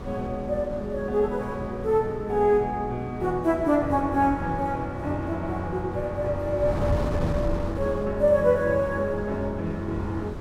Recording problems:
electrical hum; 60 Hz, harmonics up to 420 Hz, SNR 19 dB
wind on the microphone; below 290 Hz, SNR 10 dB

